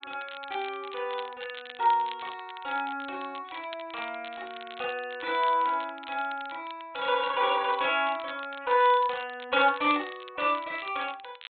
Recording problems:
treble cut off; nothing above 4 kHz
crackle; vinyl, SNR 17 dB

